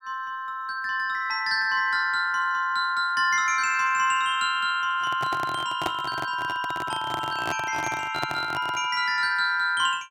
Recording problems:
microphone handling noise; from 5 to 9 s; peak 0 dB vs average level

